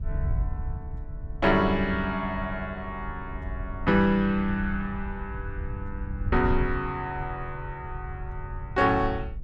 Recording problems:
wind on the microphone; below 90 Hz, SNR 9 dB

